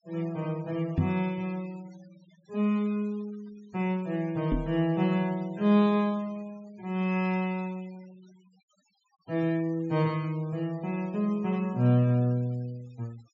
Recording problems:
treble missing; nothing above 8 kHz
noise reduction artefacts; signal-to-artefact ratio 27 dB
knock on the microphone; at 1 s and at 4.5 s; peak +5 dB vs average level

